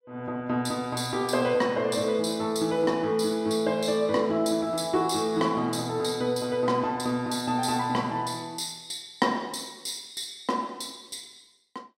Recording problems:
none

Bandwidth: 16 kHz